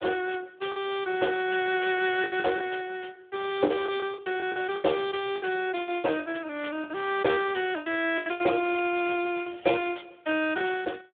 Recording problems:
telephone audio; 280 Hz to 3.6 kHz, Speex
lost packets; 10% of the sound replaced, filled with the last packet

